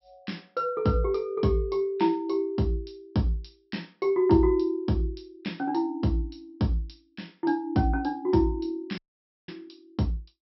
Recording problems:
low-pass filter; nothing above 5.4 kHz
dropout; at 9 s for 0.5 s

